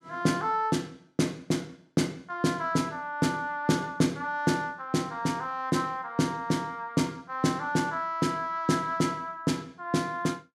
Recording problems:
none

